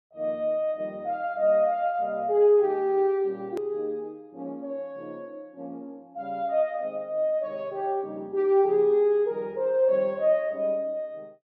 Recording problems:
hard cut with a click; at 3.5 s

